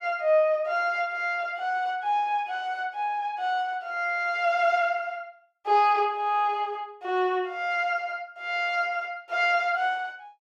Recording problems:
none

